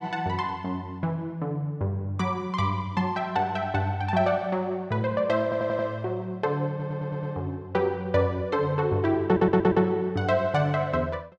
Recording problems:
stutter; at 5.5 s, at 6.5 s and at 9.5 s

